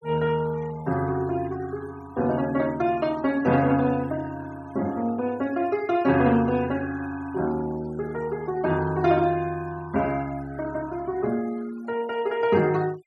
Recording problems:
denoising artefacts; signal-to-artefact ratio 21 dB

